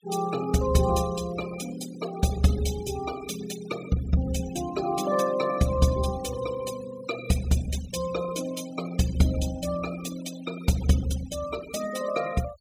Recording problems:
denoising artefacts; signal-to-artefact ratio 13 dB

